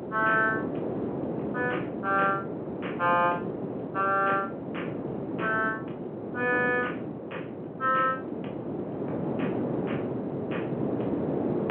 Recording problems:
telephone audio; 240 Hz to 3.3 kHz, G.711
wind on the microphone; below 520 Hz, SNR 5 dB

